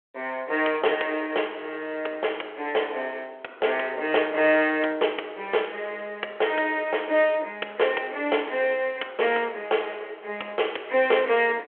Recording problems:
telephone audio; 340 Hz to 3.3 kHz, G.726

